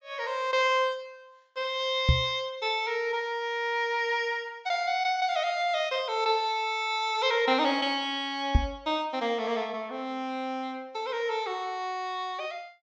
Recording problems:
treble cut off; nothing above 8 kHz
knock on the microphone; at 2 s and at 8.5 s; peak +9 dB vs average level

